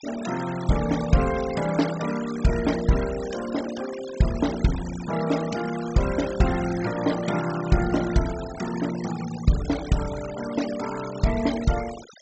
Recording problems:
treble cut off; nothing above 8 kHz
denoising artefacts; signal-to-artefact ratio 13 dB

